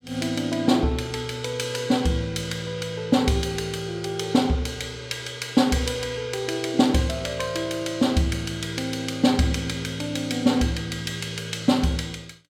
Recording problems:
none

